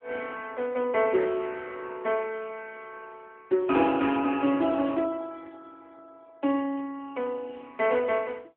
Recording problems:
telephone audio; 240 Hz to 3.4 kHz, AMR-NB

